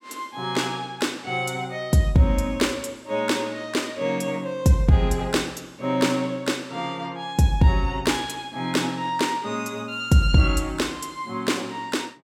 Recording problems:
none

